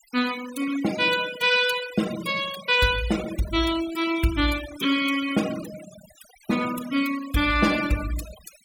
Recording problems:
denoising artefacts; signal-to-artefact ratio 13 dB

